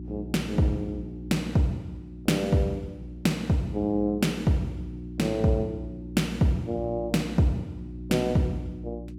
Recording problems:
electrical hum; 60 Hz, harmonics up to 360 Hz, SNR 12 dB

